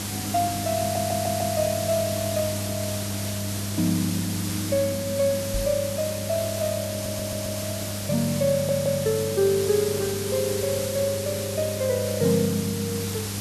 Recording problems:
hum; 50 Hz, harmonics up to 500 Hz, SNR 7 dB
hiss; SNR 5 dB
stutter; at 1 s, at 7 s and at 8.5 s
knock on the microphone; at 5.5 s; peak -1 dB vs average level

